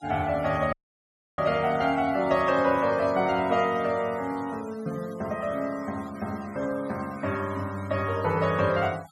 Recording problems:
denoising artefacts; signal-to-artefact ratio 21 dB
audio cutting out; at 0.5 s for 0.5 s

